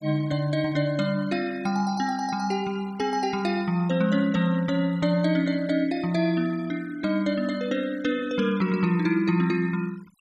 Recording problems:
denoising artefacts; signal-to-artefact ratio 24 dB

